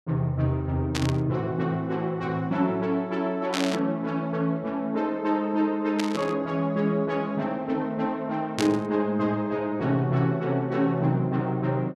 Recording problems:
static burst; 4 times, first at 1 s; peak +1 dB vs average level

